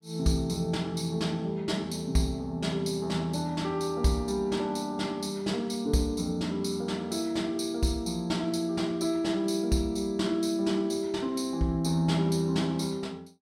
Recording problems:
none

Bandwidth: 16 kHz